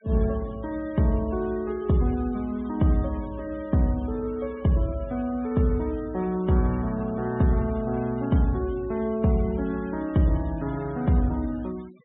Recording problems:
treble missing; nothing above 3.7 kHz
denoising artefacts; signal-to-artefact ratio 25 dB

